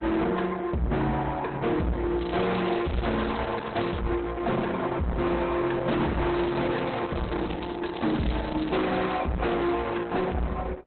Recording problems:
codec artefacts; Opus, log-spectral distance 7 dB, nothing above 4 kHz
distortion; hard clipping, uneven, signal-to-distortion ratio 6 dB
crackle; from 2 to 4 s and from 6.5 to 9 s; loose cable, SNR 16 dB

